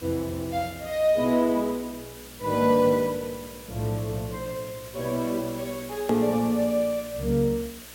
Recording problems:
mains hum; 60 Hz, harmonics up to 660 Hz, SNR 24 dB
hiss; slope +1 dB per octave, SNR 17 dB
hard cut with a click; at 6 s

